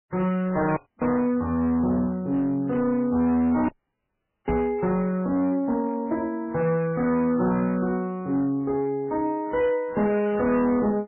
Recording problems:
lossy compression; MP3, log-spectral distance 2 dB, nothing above 2.7 kHz
distorted audio; hard clipping, uneven, signal-to-distortion ratio 12 dB
dropout; at 1 s and at 3.5 s for 1 s
microphone bump; at 4.5 s; peak 0 dB vs average level

